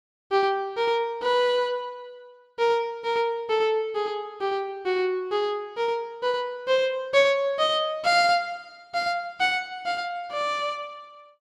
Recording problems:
none

